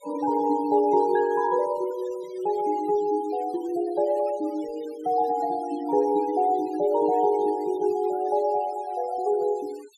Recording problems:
denoising artefacts; signal-to-artefact ratio 24 dB

